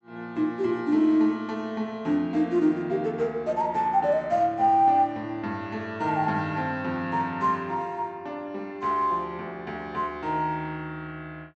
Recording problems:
treble missing; nothing above 7.9 kHz

